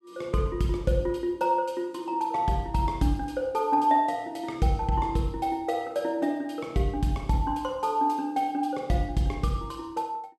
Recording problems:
none

